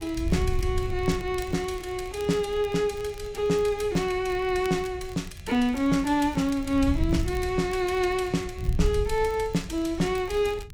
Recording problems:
wind on the microphone; below 90 Hz, SNR 9 dB
crackling; vinyl, SNR 25 dB

